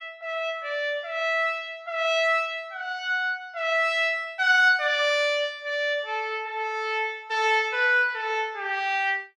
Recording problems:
none

